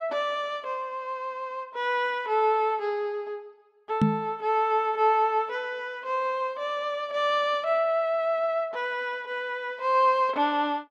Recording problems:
knock on the microphone; at 4 s; peak +8 dB vs average level

